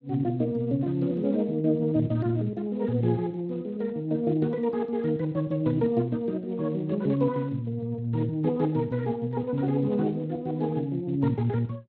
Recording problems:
lossy compression; Speex, log-spectral distance 2 dB

